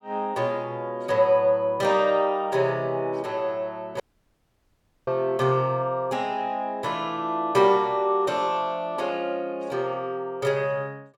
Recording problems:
dropout; at 4 s for 1 s

